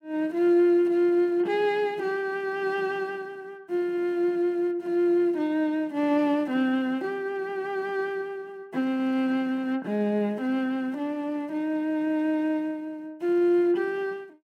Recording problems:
none

